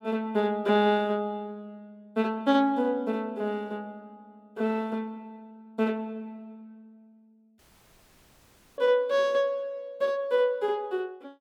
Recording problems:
audio cutting out; at 7.5 s for 1 s

